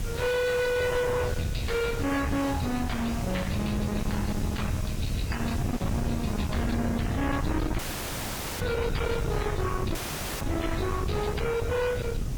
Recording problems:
lossy codec; MP3, log-spectral distance 4 dB
distortion; soft clipping, signal-to-distortion ratio 6 dB
background hiss; slope -1 dB per octave, SNR 16 dB
wind noise; below 300 Hz, SNR 3 dB
audio cutting out; at 8 s for 1 s and at 10 s

